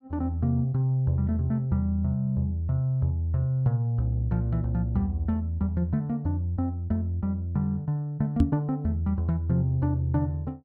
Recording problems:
microphone bump; at 8.5 s; peak +8 dB vs average level

